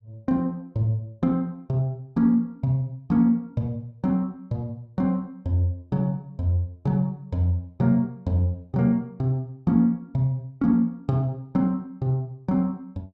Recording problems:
none

